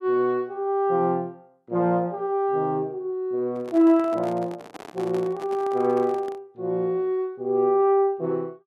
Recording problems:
handling noise; from 3.5 to 6.5 s; peak -11 dB vs average level

